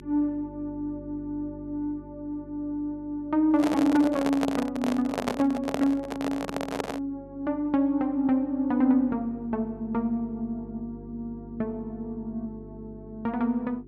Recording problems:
hum; 50 Hz, harmonics up to 400 Hz, SNR 18 dB
handling noise; from 3.5 to 7 s; peak +3 dB vs average level

